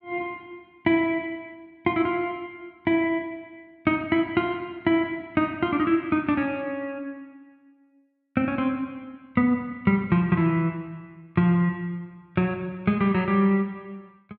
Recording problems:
none

